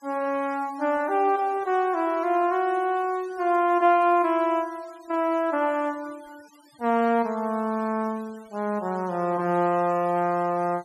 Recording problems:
noise reduction artefacts; signal-to-artefact ratio 27 dB

